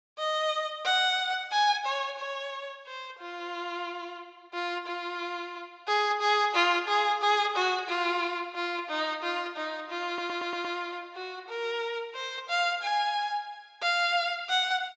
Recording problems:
low-pass filter; nothing above 8 kHz
audio stuttering; at 10 s

